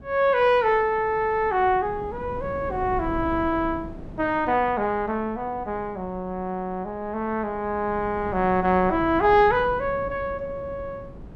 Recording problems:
wind on the microphone; below 280 Hz, SNR 16 dB

